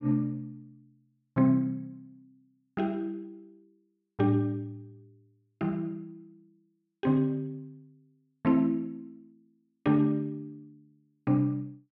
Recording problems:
none

